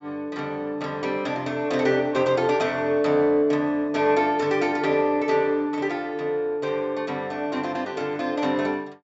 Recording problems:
treble cut off; nothing above 7.6 kHz

